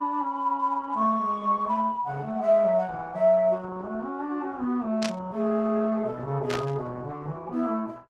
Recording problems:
lossy compression; Opus, log-spectral distance 2 dB
burst of static; at 5 s and at 6.5 s; peak -1 dB vs average level

